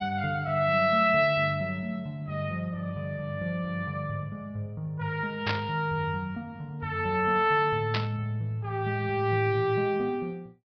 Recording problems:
treble missing; nothing above 5.5 kHz
static burst; at 5.5 s and at 8 s; peak +2 dB vs average level

